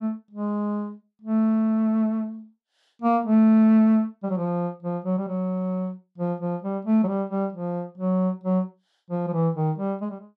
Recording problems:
none

